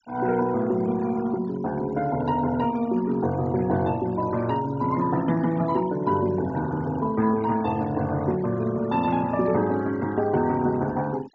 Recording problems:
low-pass filter; nothing above 8 kHz
noise reduction artefacts; signal-to-artefact ratio 19 dB

